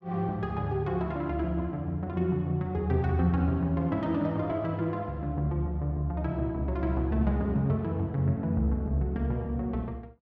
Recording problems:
none

